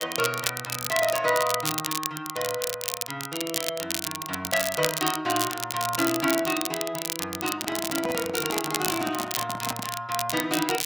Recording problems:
crackling; vinyl, SNR 2 dB
microphone handling noise; from 7.5 to 10 s; peak -2 dB vs average level

